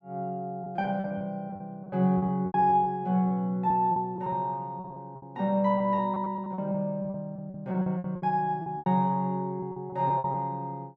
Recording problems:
lost packets; 14% of the sound replaced, filled with repeated pitch periods

